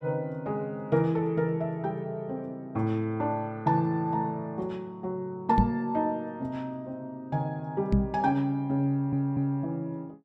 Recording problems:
microphone bump; at 5.5 s and at 8 s; peak +9 dB vs average level
stutter; at 9 s

